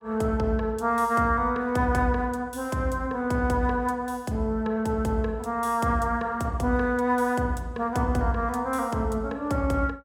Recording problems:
none

